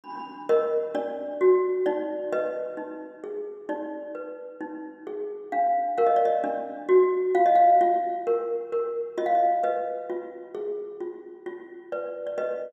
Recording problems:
none

